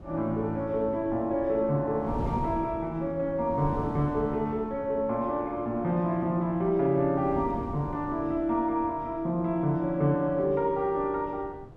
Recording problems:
wind on the microphone; below 310 Hz, SNR 14 dB

